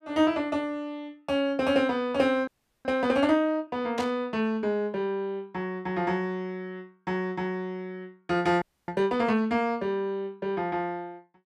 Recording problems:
frozen audio; at 2.5 s and at 8.5 s
static burst; at 4 s; peak -6 dB vs average level

